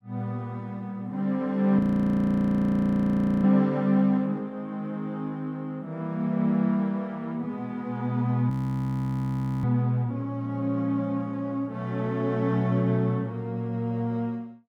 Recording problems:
audio freezing; at 2 s for 1.5 s and at 8.5 s for 1 s

